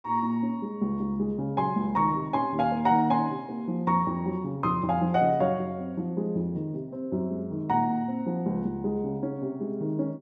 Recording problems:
none

